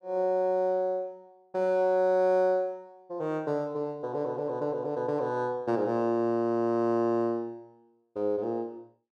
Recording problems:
none

